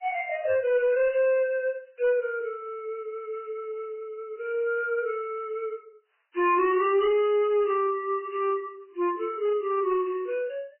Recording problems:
lossy codec; MP3, log-spectral distance 2 dB, nothing above 2.4 kHz
distortion; hard clipping, uneven, signal-to-distortion ratio 11 dB

